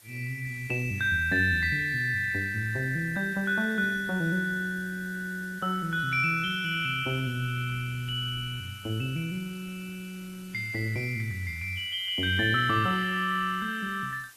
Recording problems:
lossy codec; Opus, log-spectral distance 5 dB
hiss; slope +1 dB per octave, SNR 24 dB

